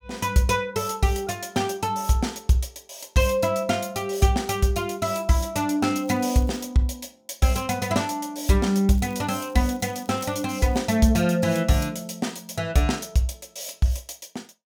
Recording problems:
crackling; at 6 s and from 9 to 11 s; loose cable, SNR 27 dB

